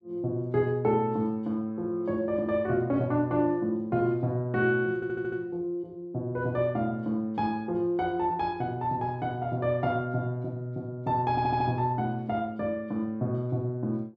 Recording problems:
stutter; at 5 s and at 11 s

